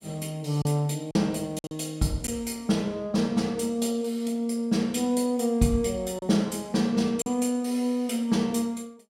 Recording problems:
lost packets; 3% of the sound replaced, filled with silence

